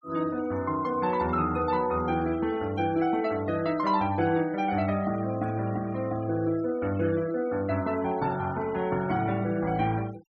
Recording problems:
noise reduction artefacts; signal-to-artefact ratio 20 dB

